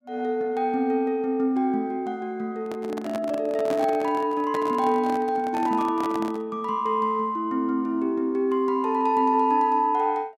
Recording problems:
handling noise; from 2.5 to 6.5 s; peak -4 dB vs average level

